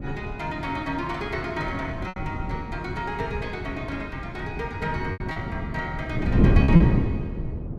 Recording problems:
wind on the microphone; below 220 Hz, SNR -5 dB
lost packets; 4% of the sound replaced, filled with repeated pitch periods

